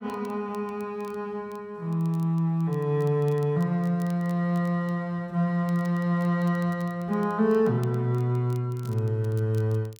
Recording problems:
crackling; vinyl, SNR 29 dB

